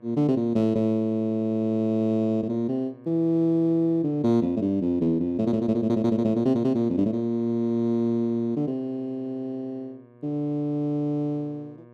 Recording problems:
electrical hum; 60 Hz, harmonics up to 1.7 kHz, SNR 26 dB

